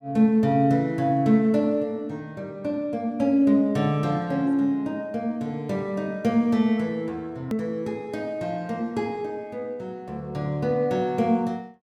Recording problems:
click at an edit; at 7.5 s

